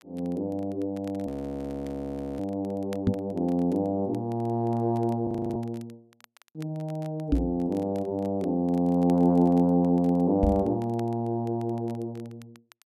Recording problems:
crackling; vinyl, SNR 29 dB
audio freezing; at 1.5 s for 1 s and at 5.5 s
knock on the microphone; at 3 s, at 7.5 s and at 10 s; peak +6 dB vs average level

